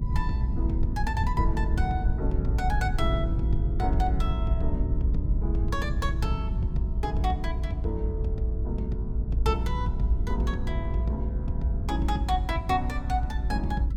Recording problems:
rumble; below 80 Hz, SNR -3 dB

